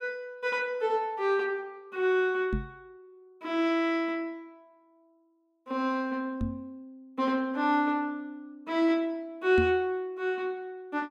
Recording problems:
microphone thump; at 2.5 s, at 6.5 s and at 9.5 s; peak +2 dB vs average level

